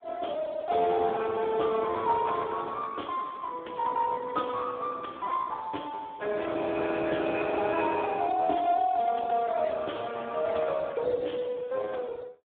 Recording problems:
telephone audio; 240 Hz to 3.7 kHz, Speex

